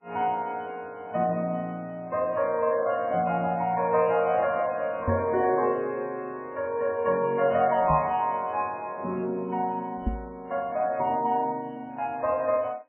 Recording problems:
codec artefacts; MP3, log-spectral distance 2 dB, nothing above 2.5 kHz
microphone thump; at 5 s, at 8 s and at 10 s; peak +3 dB vs average level

